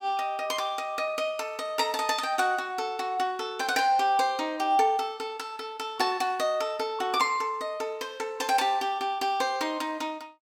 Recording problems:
none

